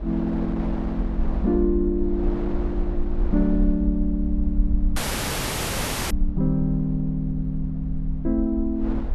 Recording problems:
low-frequency rumble; below 56 Hz, SNR 4 dB
wind on the microphone; below 680 Hz, SNR 12 dB
dropout; at 5 s for 1 s

